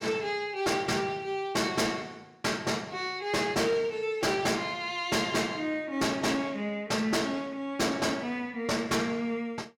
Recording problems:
distortion; soft clipping, signal-to-distortion ratio 10 dB

